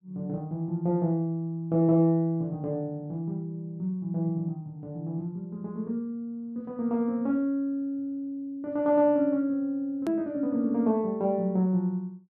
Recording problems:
hard cut with a click; at 10 s

